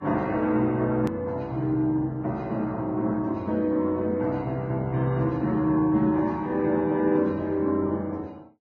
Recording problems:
codec artefacts; Vorbis, then Vorbis, log-spectral distance 2 dB, nothing above 13.1 kHz
edit click; at 1 s

